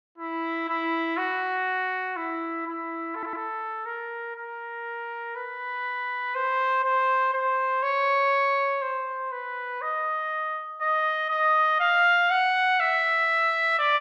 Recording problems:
stutter; at 3 s

